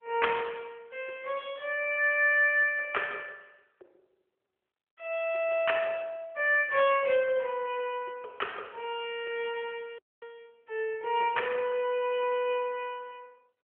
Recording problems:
phone line; 340 Hz to 3.4 kHz, AMR-NB
audio cutting out; at 10 s

